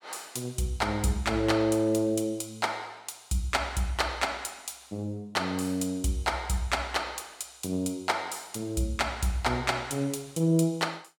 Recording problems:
none

